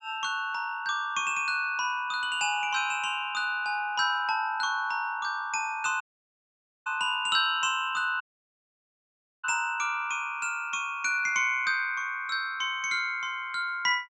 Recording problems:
low-pass filter; nothing above 8 kHz
dropout; at 6 s for 1 s and at 8 s for 1 s

